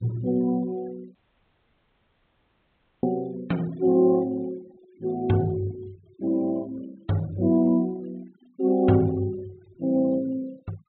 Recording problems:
treble cut off; nothing above 4 kHz
denoising artefacts; signal-to-artefact ratio 25 dB
dropout; at 1 s for 2 s

